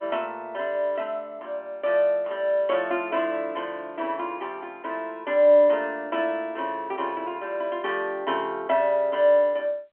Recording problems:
telephone audio; 240 Hz to 3.9 kHz, G.711

